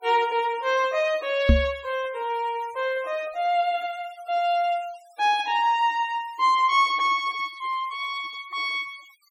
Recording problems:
denoising artefacts; signal-to-artefact ratio 24 dB
microphone bump; at 1.5 s; peak +9 dB vs average level

